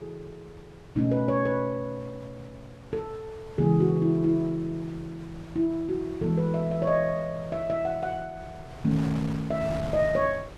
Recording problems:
wind on the microphone; below 780 Hz, SNR 16 dB

